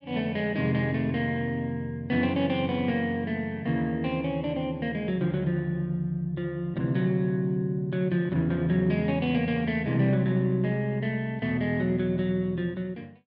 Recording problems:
none

